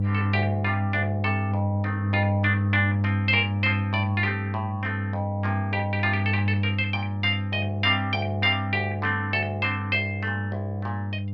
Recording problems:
hum; 50 Hz, harmonics up to 500 Hz, SNR 1 dB

